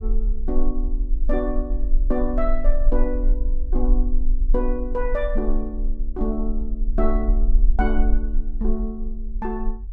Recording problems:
low-frequency rumble; below 36 Hz, strongest tone 20 Hz, SNR -3 dB

